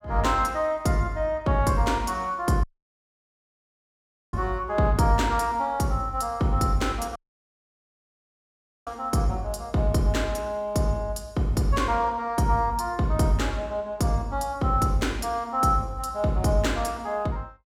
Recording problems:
audio cutting out; at 2.5 s for 1.5 s and at 7 s for 1.5 s

